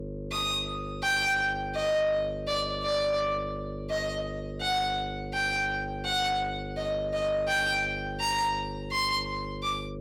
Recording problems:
distortion; soft clipping, signal-to-distortion ratio 12 dB
mains hum; 50 Hz, harmonics up to 550 Hz, SNR 9 dB

